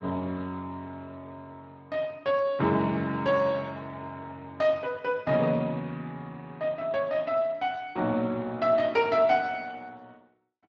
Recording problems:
codec artefacts; Speex, log-spectral distance 3 dB

